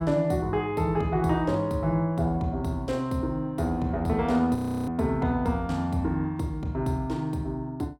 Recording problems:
audio freezing; at 4.5 s

